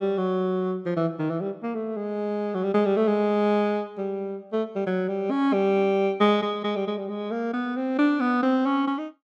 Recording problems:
none

